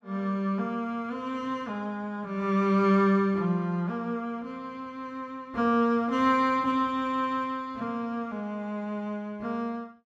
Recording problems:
none

